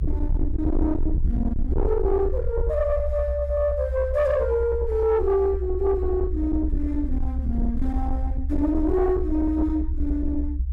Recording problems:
distortion; soft clipping, signal-to-distortion ratio 8 dB
low-frequency rumble; below 68 Hz, SNR 3 dB

